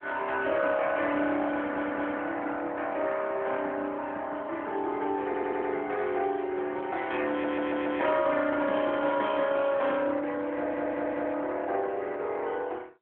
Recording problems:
phone line; 260 Hz to 3.4 kHz, AMR-NB
audio stuttering; 4 times, first at 1.5 s

